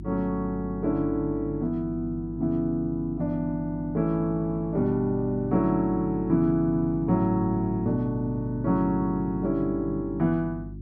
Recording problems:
electrical hum; 50 Hz, harmonics up to 350 Hz, SNR 12 dB

